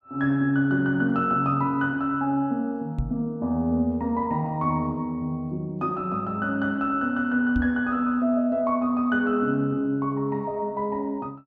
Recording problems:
microphone bump; at 3 s and at 7.5 s; peak +1 dB vs average level

